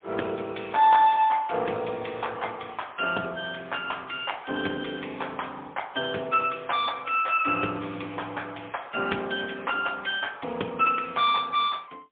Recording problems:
phone line; 260 Hz to 3.5 kHz, AMR-NB, then MP3

